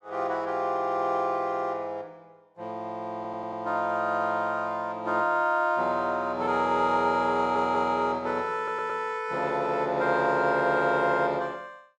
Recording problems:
audio stuttering; at 3 s, at 7.5 s and at 8.5 s

